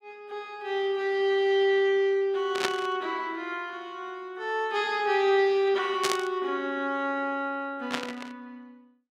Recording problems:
static burst; at 2.5 s, at 6 s and at 8 s; peak +4 dB vs average level

